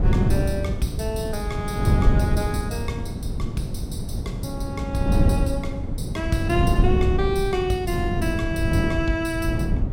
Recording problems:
wind noise; below 180 Hz, SNR -2 dB

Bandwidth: 16.5 kHz